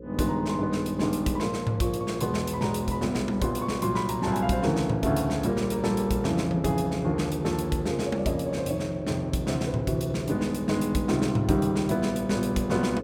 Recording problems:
hum; 60 Hz, harmonics up to 540 Hz, SNR 14 dB

